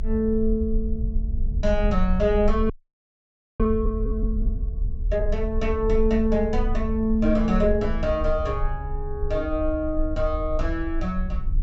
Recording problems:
treble missing; nothing above 8 kHz
rumble; below 56 Hz, strongest tone 26 Hz, SNR 4 dB
frozen audio; at 2.5 s for 1 s

